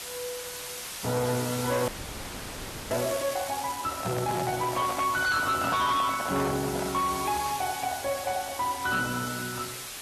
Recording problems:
lossy codec; AAC, log-spectral distance 10 dB, nothing above 13.1 kHz
distorted audio; hard clipping, signal-to-distortion ratio 12 dB
hiss; slope 0 dB per octave, SNR 7 dB
audio freezing; at 2 s for 1 s
handling noise; from 4 to 7 s; peak -2 dB vs average level

